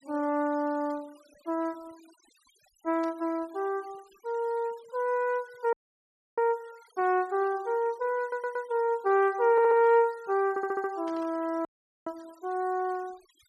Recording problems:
denoising artefacts; signal-to-artefact ratio 27 dB
burst of static; at 3 s and at 11 s; peak -19 dB vs average level
audio cutting out; at 5.5 s for 0.5 s and at 12 s
stutter; at 8 s, at 9.5 s and at 11 s

